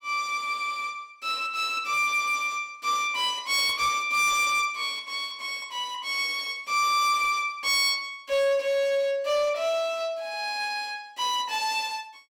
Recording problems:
distorted audio; hard clipping, uneven, signal-to-distortion ratio 12 dB

